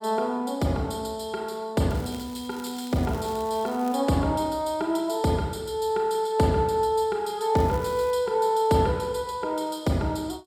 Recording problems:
crackle; from 2 to 4 s and at 7.5 s; loose cable, SNR 21 dB

